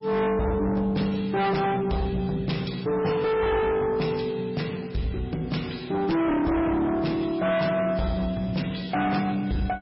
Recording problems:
lossy compression; MP3, log-spectral distance 3 dB, nothing above 5.5 kHz
distortion; soft clipping, signal-to-distortion ratio 7 dB

